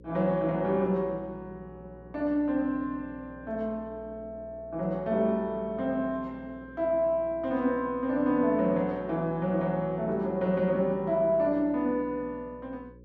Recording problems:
hum; 60 Hz, harmonics up to 540 Hz, SNR 22 dB

